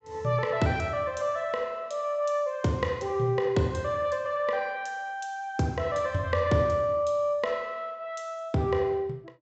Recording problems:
low-pass filter; nothing above 8 kHz

